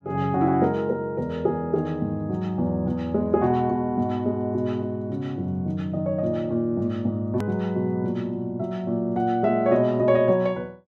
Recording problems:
hard cut with a click; at 7.5 s

